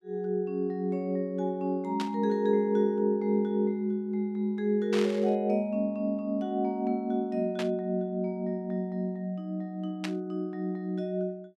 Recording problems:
burst of static; 4 times, first at 2 s; peak -2 dB vs average level

